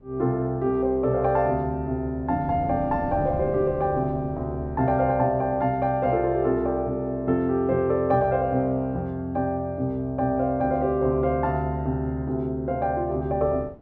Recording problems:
wind on the microphone; below 400 Hz, SNR 13 dB

